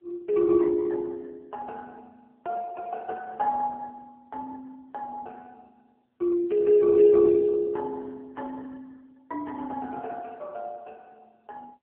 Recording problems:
telephone audio; 300 Hz to 2.6 kHz, AMR-NB

